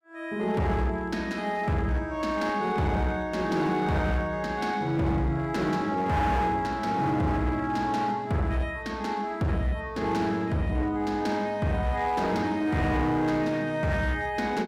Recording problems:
distortion; hard clipping, signal-to-distortion ratio 11 dB

